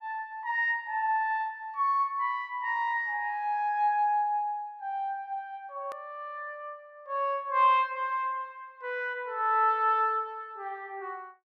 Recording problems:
click at an edit; at 6 s

